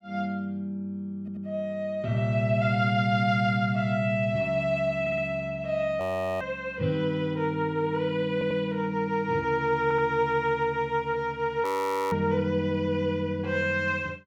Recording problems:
stutter; 4 times, first at 1 s
frozen audio; at 6 s and at 12 s

